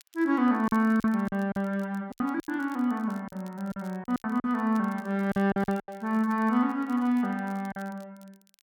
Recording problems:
crackle; vinyl, SNR 29 dB
lost packets; 10% of the sound replaced, filled with silence

